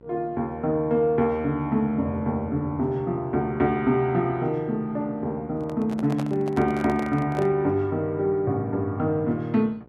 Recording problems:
hum; 60 Hz, harmonics up to 1.5 kHz, SNR 26 dB
microphone handling noise; from 5.5 to 7.5 s; peak -6 dB vs average level

